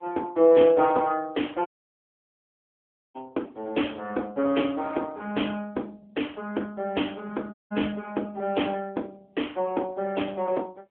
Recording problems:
phone line; 240 Hz to 3.4 kHz, AMR-NB
audio cutting out; at 1.5 s for 1.5 s and at 7.5 s

